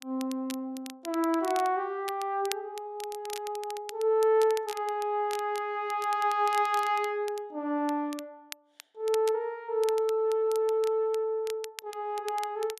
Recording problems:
crackling; vinyl, SNR 16 dB

